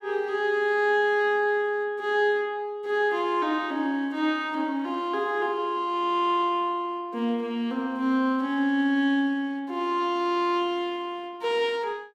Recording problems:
none

